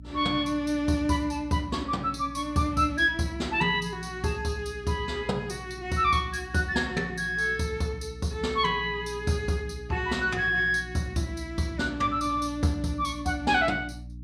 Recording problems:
hum; 60 Hz, harmonics up to 300 Hz, SNR 16 dB

